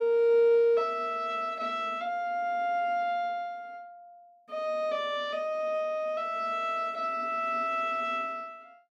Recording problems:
none

